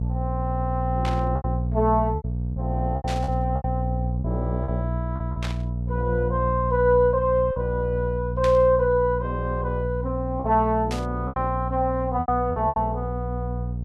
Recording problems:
hum; 60 Hz, harmonics up to 480 Hz, SNR 3 dB
packet loss; 7% of the sound replaced, filled with repeated pitch periods
static burst; 5 times, first at 1 s; peak -5 dB vs average level

